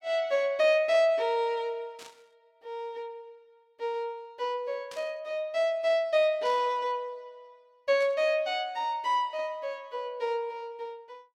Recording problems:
burst of static; 4 times, first at 2 s; peak -13 dB vs average level

